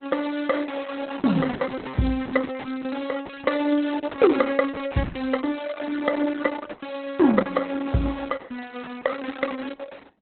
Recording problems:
codec artefacts; Opus, log-spectral distance 5 dB, nothing above 4 kHz

